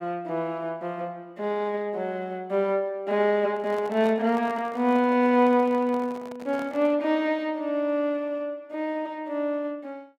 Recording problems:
handling noise; from 3.5 to 7 s; peak -9 dB vs average level

